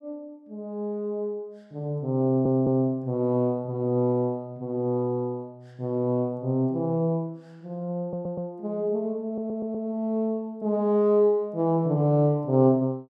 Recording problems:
stutter; at 2 s, at 8 s and at 9.5 s

